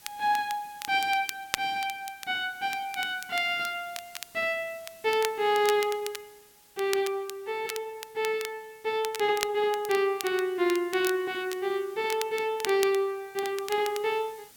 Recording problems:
background hiss; slope 0 dB per octave, SNR 24 dB
crackle; vinyl, SNR 11 dB

